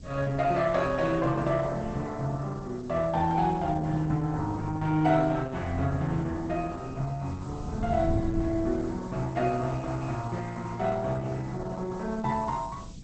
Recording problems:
lossy compression; Opus, log-spectral distance 4 dB, nothing above 8 kHz
background hiss; slope +7 dB per octave, SNR 28 dB
wind on the microphone; below 170 Hz, SNR 12 dB

